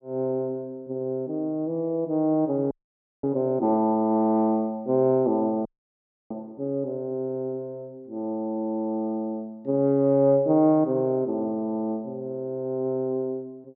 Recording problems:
frozen audio; at 2.5 s for 0.5 s and at 5.5 s for 0.5 s

